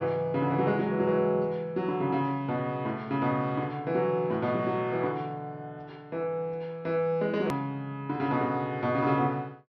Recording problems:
treble missing; nothing above 6.1 kHz
edit click; at 7.5 s

